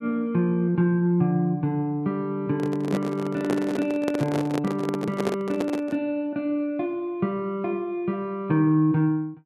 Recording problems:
microphone handling noise; from 2.5 to 6 s; peak +1 dB vs average level

